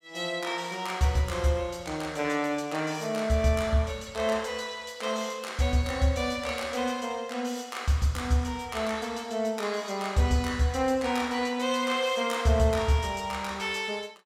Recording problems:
none

